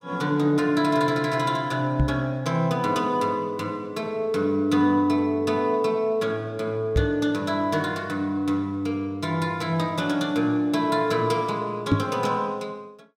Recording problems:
microphone thump; at 2 s, at 7 s and at 12 s; peak +7 dB vs average level

